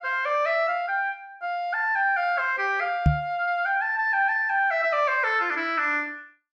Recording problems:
knock on the microphone; at 3 s; peak +7 dB vs average level

